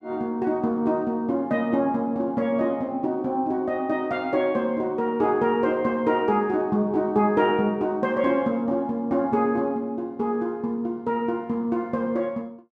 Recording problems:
none

